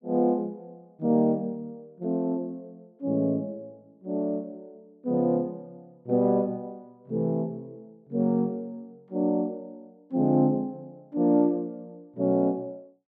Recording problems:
none

